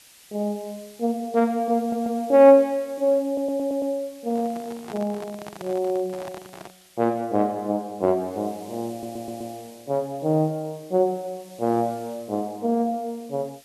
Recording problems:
background hiss; SNR 25 dB
audio stuttering; at 2 s, at 3.5 s and at 9 s
microphone handling noise; from 4.5 to 6.5 s; peak -10 dB vs average level

